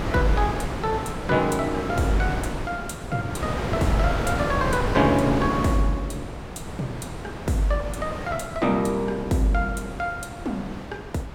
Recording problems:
wind on the microphone; below 840 Hz, SNR 5 dB

